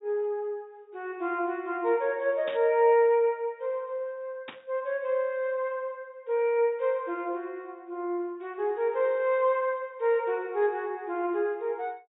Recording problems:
treble missing; nothing above 4 kHz
static burst; at 2.5 s and at 4.5 s; peak -8 dB vs average level

